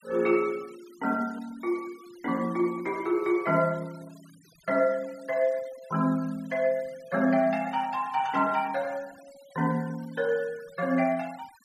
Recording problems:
denoising artefacts; signal-to-artefact ratio 24 dB

